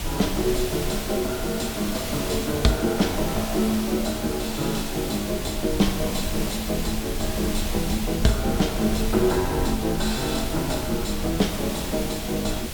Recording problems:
hiss; slope -2 dB per octave, SNR 6 dB
rumble; below 72 Hz, SNR 10 dB

